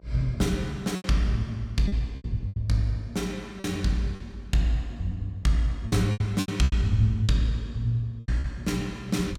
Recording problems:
hum; 60 Hz, harmonics up to 1.2 kHz, SNR 33 dB
lost packets; 9% of the sound replaced, filled with repeated pitch periods

